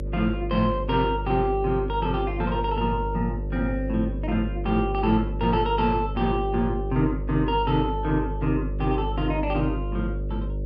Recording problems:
hum; 50 Hz, harmonics up to 600 Hz, SNR 5 dB

